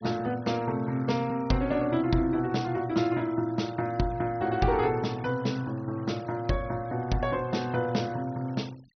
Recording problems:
low-pass filter; nothing above 6.1 kHz
denoising artefacts; signal-to-artefact ratio 24 dB

